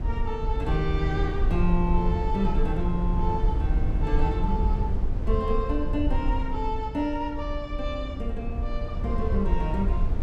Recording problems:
low-frequency rumble; below 68 Hz, SNR -1 dB

